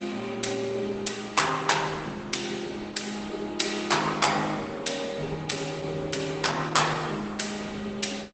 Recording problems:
lossy codec; Opus, log-spectral distance 6 dB, nothing above 8 kHz

